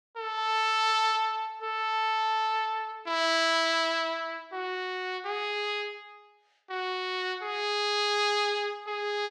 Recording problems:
none

